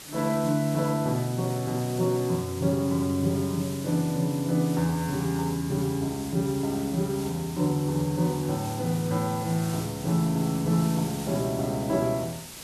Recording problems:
background hiss; slope -1 dB per octave, SNR 13 dB

